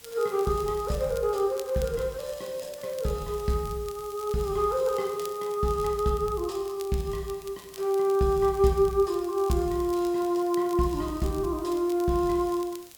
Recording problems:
background hiss; slope -1 dB per octave, SNR 22 dB
crackling; vinyl, SNR 21 dB

